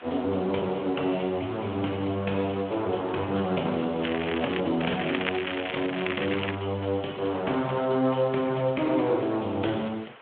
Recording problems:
phone line; 220 Hz to 3.4 kHz, Speex
hiss; SNR 20 dB
crackling; at 4 s and from 5 to 6.5 s; loose cable, SNR 6 dB

